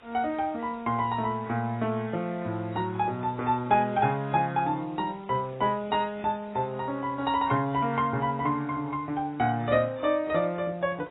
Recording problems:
lossy codec; AAC, log-spectral distance 3 dB, nothing above 3.4 kHz
hiss; SNR 27 dB

